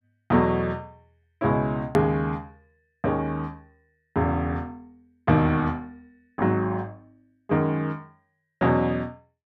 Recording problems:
hard cut with a click; at 2 s

